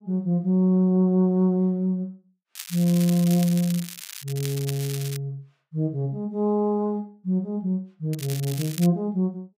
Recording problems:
crackling; from 2.5 to 5 s and at 8 s; loose cable, SNR 12 dB

